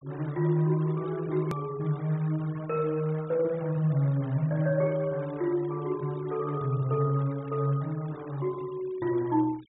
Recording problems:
treble cut off; nothing above 4 kHz
noise reduction artefacts; signal-to-artefact ratio 23 dB
hard cut with a click; at 1.5 s

